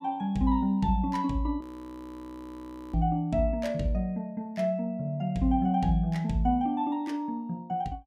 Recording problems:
frozen audio; at 1.5 s for 1.5 s

